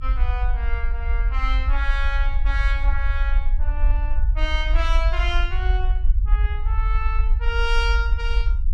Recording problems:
low-frequency rumble; below 52 Hz, SNR -6 dB

